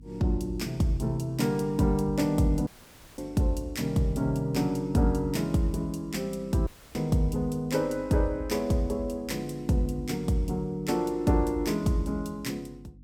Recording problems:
hum; 50 Hz, harmonics up to 300 Hz, SNR 21 dB
dropout; at 2.5 s for 0.5 s and at 6.5 s

